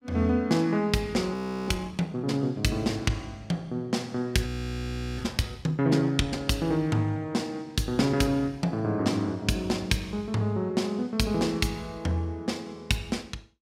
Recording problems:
frozen audio; at 1.5 s and at 4.5 s for 0.5 s

